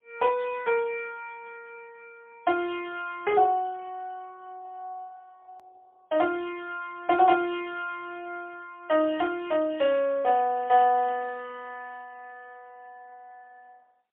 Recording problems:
phone line; 300 Hz to 3.4 kHz, AMR-NB, then MP3
hard cut with a click; at 5.5 s

